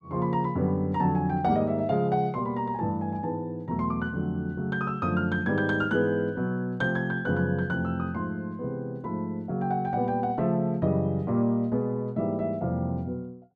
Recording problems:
none

